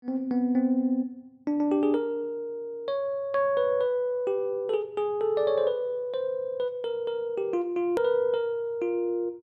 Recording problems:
click at an edit; at 8 s

